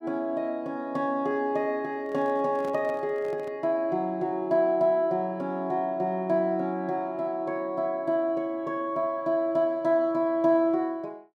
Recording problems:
microphone handling noise; from 2 to 3.5 s; peak -11 dB vs average level

